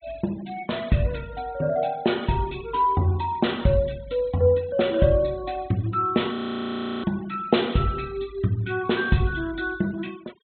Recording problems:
treble cut off; nothing above 4 kHz
denoising artefacts; signal-to-artefact ratio 23 dB
audio freezing; at 6.5 s for 0.5 s

